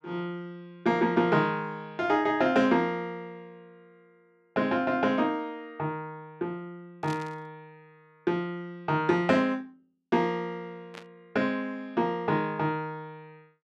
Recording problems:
static burst; at 7 s and at 11 s; peak -11 dB vs average level

